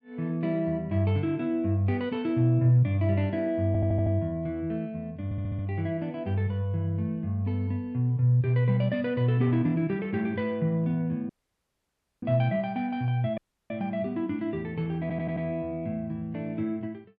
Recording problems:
audio stuttering; at 3.5 s, at 5.5 s and at 15 s
audio cutting out; at 11 s for 1 s and at 13 s

